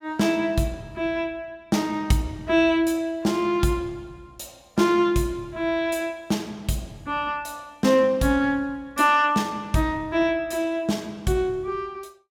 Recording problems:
none

